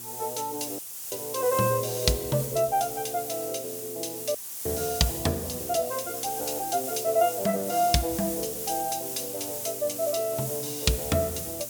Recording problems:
electrical hum; 60 Hz, harmonics up to 1.6 kHz, SNR 23 dB
hiss; SNR 5 dB
audio cutting out; at 1 s and at 4.5 s

